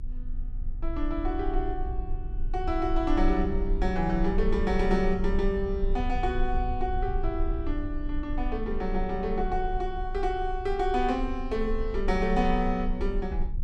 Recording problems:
low-frequency rumble; below 44 Hz, strongest tone 24 Hz, SNR 5 dB

